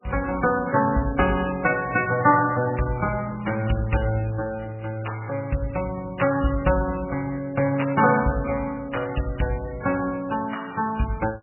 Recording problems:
lossy codec; MP3, log-spectral distance 6 dB, nothing above 2.6 kHz

